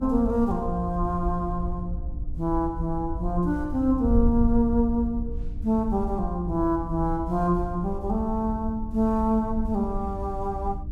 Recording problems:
hum; 60 Hz, harmonics up to 300 Hz, SNR 18 dB
wind noise; below 70 Hz, SNR 8 dB

